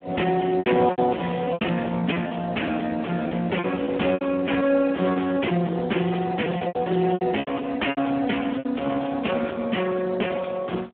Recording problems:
telephone audio; 220 Hz to 3.3 kHz, Speex
distorted audio; soft clipping, signal-to-distortion ratio 12 dB
packet loss; 11% of the sound replaced, filled with repeated pitch periods

